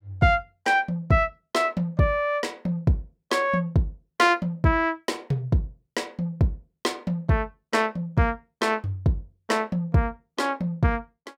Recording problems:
none

